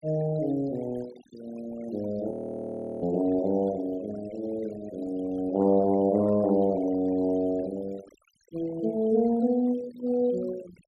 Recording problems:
denoising artefacts; signal-to-artefact ratio 21 dB
audio freezing; at 2.5 s for 0.5 s

